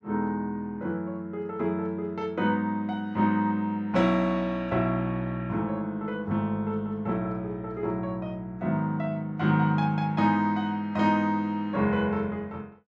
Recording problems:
none

